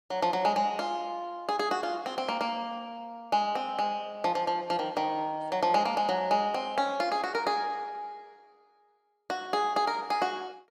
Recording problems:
none

